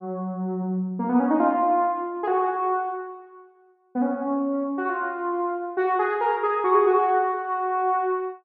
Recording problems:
none

